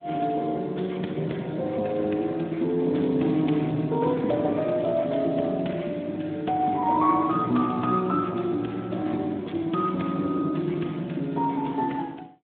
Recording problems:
telephone audio; 170 Hz to 3.7 kHz, Speex
crackling; at 2.5 s and at 4.5 s; loose cable, SNR 29 dB

